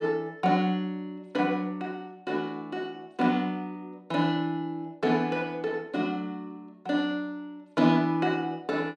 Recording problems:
none

